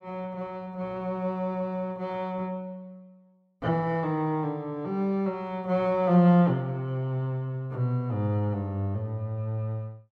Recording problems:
none

